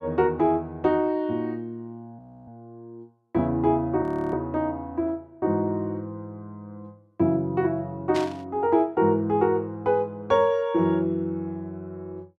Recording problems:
frozen audio; at 2 s and at 4 s
burst of static; at 8 s; peak -5 dB vs average level

